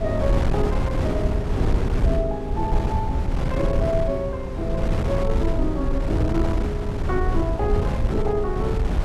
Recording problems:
rumble; below 66 Hz, SNR 6 dB
wind on the microphone; below 150 Hz, SNR -1 dB

